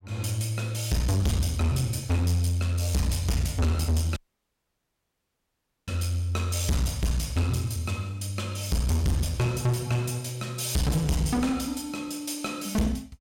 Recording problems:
distorted audio; hard clipping, uneven, signal-to-distortion ratio 5 dB
dropout; at 4 s for 1.5 s

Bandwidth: 16.5 kHz